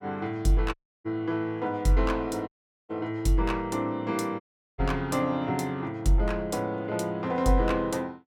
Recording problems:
audio cutting out; at 0.5 s, at 2.5 s and at 4.5 s

